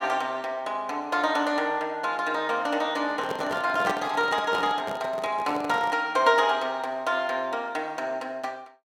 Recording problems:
handling noise; from 3 to 6 s; peak 0 dB vs average level

